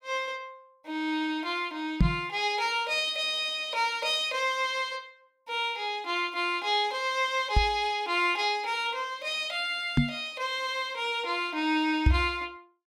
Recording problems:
microphone thump; 4 times, first at 2 s; peak +9 dB vs average level

